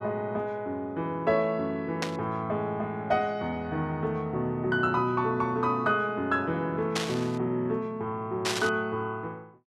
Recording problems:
static burst; at 2 s, at 7 s and at 8.5 s; peak +3 dB vs average level

